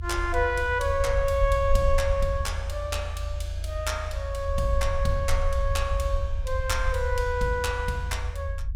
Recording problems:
low-frequency rumble; below 78 Hz, SNR 2 dB

